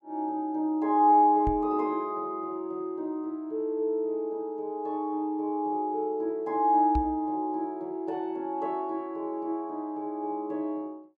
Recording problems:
knock on the microphone; at 1.5 s and at 7 s; peak +1 dB vs average level

